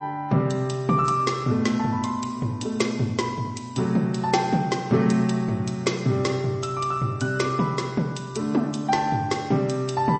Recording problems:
lossy codec; MP3, log-spectral distance 3 dB, nothing above 8.2 kHz

